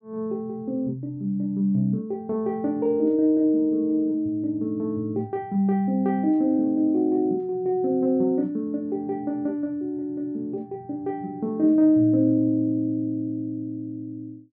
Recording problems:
none

